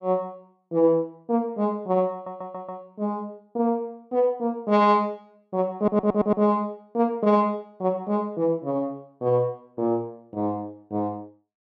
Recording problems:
audio stuttering; at 2 s and at 6 s

